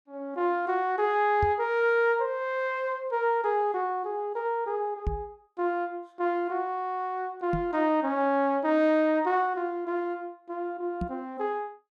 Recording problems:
microphone bump; 4 times, first at 1.5 s; peak +1 dB vs average level

